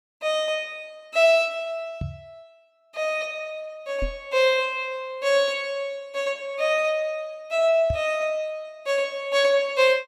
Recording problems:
knock on the microphone; at 2 s, at 4 s and at 8 s; peak -1 dB vs average level

